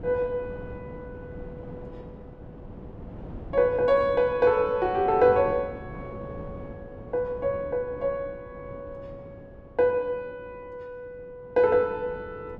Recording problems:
wind noise; below 380 Hz, SNR 18 dB

